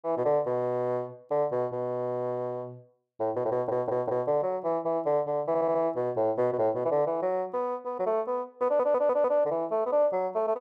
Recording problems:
audio stuttering; at 3.5 s, at 5.5 s and at 8.5 s

